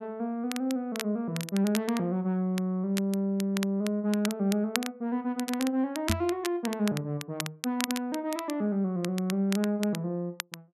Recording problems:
crackle; vinyl, SNR 9 dB
microphone bump; at 6 s; peak +5 dB vs average level

